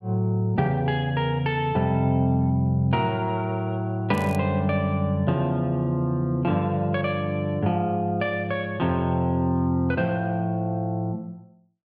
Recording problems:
crackling; at 4 s; loose cable, SNR 24 dB

